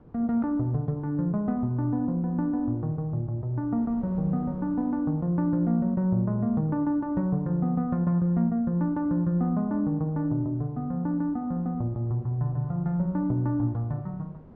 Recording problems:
wind on the microphone; below 370 Hz, SNR 23 dB

